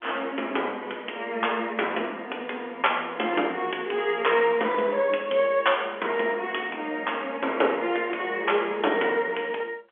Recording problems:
telephone audio; 280 Hz to 3.4 kHz, G.711

